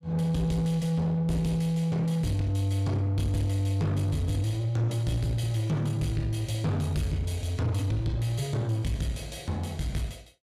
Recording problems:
distortion; soft clipping, signal-to-distortion ratio 12 dB

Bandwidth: 15.5 kHz